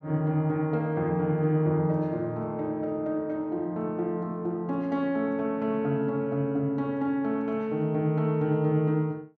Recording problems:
none

